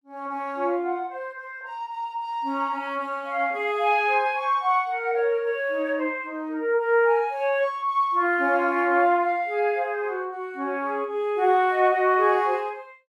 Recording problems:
none

